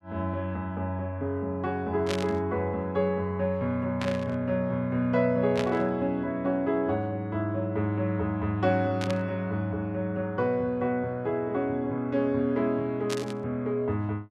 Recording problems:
burst of static; 5 times, first at 2 s; peak -1 dB vs average level

